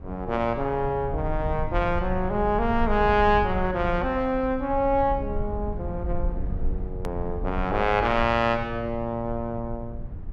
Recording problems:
low-frequency rumble; below 82 Hz, SNR 9 dB
click at an edit; at 7 s

